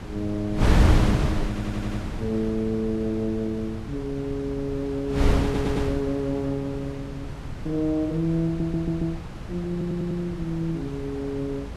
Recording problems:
wind on the microphone; below 220 Hz, SNR 1 dB
stutter; 4 times, first at 1.5 s

